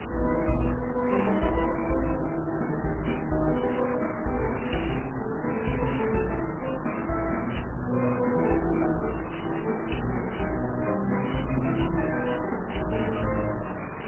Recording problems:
lossy codec; MP3, then Opus, log-spectral distance 14 dB
background hiss; SNR 7 dB

